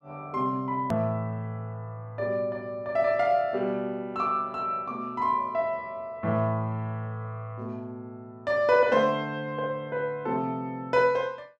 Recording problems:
hard cut with a click; at 1 s

